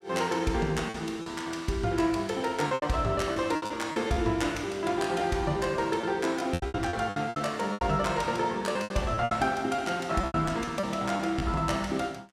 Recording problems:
lost packets; 11% of the sound replaced, filled with repeated pitch periods

